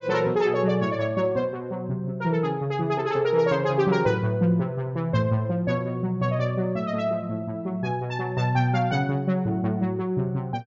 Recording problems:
treble missing; nothing above 7.3 kHz

